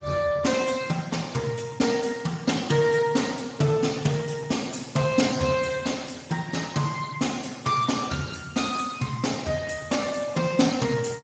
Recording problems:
codec artefacts; Speex, log-spectral distance 6 dB, nothing above 7.6 kHz

